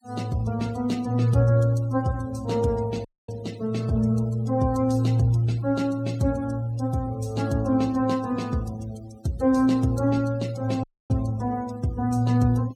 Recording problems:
noise reduction artefacts; signal-to-artefact ratio 22 dB
audio cutting out; at 3 s and at 11 s

